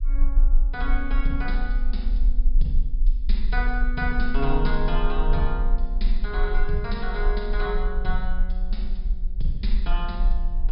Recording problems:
treble cut off; nothing above 5.5 kHz
low-frequency rumble; below 36 Hz, strongest tone 26 Hz, SNR -4 dB

